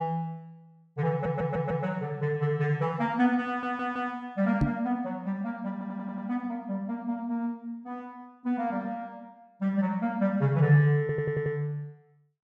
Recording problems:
stutter; 4 times, first at 1 s
knock on the microphone; at 4.5 s; peak +6 dB vs average level

